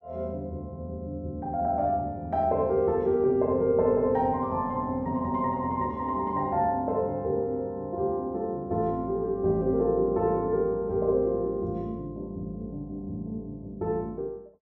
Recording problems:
none

